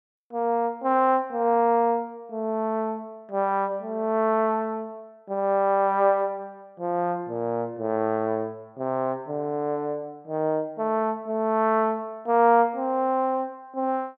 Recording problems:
none

